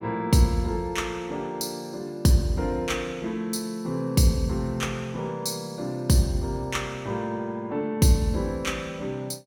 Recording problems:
none

